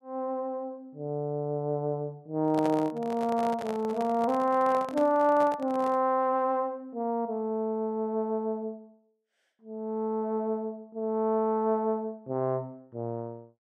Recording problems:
handling noise; from 2.5 to 6 s; peak -4 dB vs average level

